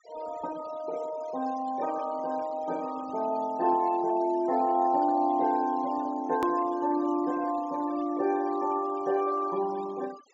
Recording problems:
low-pass filter; nothing above 8 kHz
denoising artefacts; signal-to-artefact ratio 21 dB
edit click; at 6.5 s

